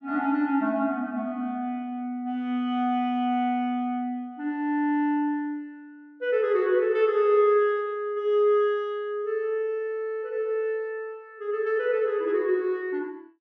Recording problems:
none

